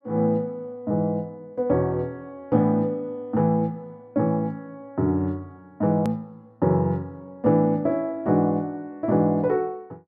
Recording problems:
edit click; at 6 s

